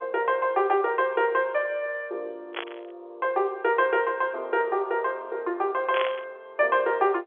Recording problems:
phone line; 300 Hz to 3.6 kHz, G.711
burst of static; at 2.5 s and at 6 s; peak 0 dB vs average level

